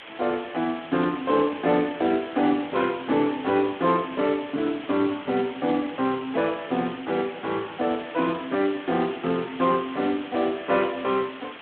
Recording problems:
phone line; 190 Hz to 3.6 kHz, Speex
background hiss; SNR 15 dB

